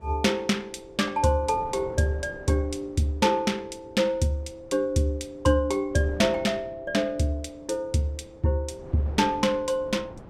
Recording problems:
wind noise; below 500 Hz, SNR 20 dB

